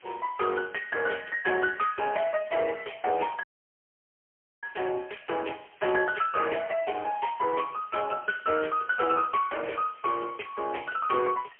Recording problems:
telephone audio; 320 Hz to 3.2 kHz, AMR-NB, then MP3
hiss; SNR 27 dB
dropout; at 3.5 s for 1 s

